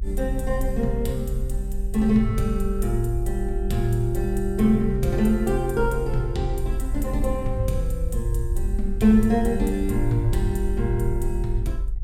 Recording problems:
rumble; below 46 Hz, SNR 5 dB

